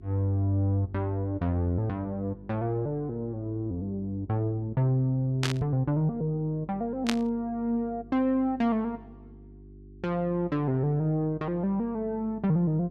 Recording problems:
hum; 50 Hz, harmonics up to 400 Hz, SNR 22 dB
static burst; at 5.5 s and at 7 s; peak +3 dB vs average level

